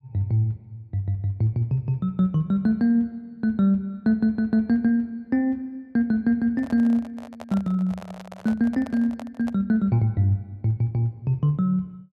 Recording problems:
handling noise; from 6.5 to 9.5 s; peak -11 dB vs average level

